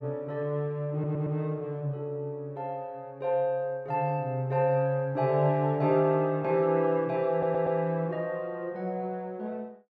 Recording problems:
stutter; at 1 s and at 7.5 s

